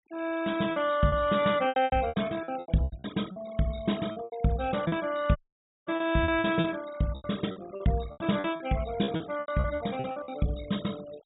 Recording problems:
low-pass filter; nothing above 4 kHz
noise reduction artefacts; signal-to-artefact ratio 18 dB
packet loss; 16% of the sound replaced, filled with repeated pitch periods
dropout; at 5.5 s for 0.5 s

